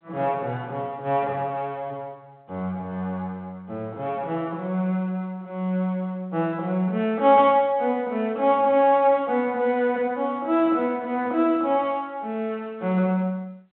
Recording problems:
phone line; 260 Hz to 3.6 kHz, G.726

